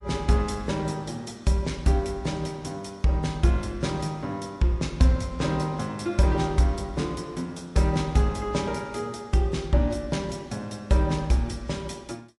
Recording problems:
lossy compression; MP3, log-spectral distance 2 dB, nothing above 11.3 kHz

